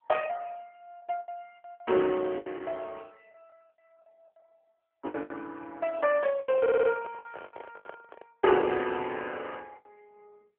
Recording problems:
telephone audio; 260 Hz to 3.3 kHz, AMR-NB
packet loss; 12% of the sound replaced, filled with the last packet
microphone handling noise; from 6.5 to 8.5 s; peak -10 dB vs average level
stutter; at 6.5 s

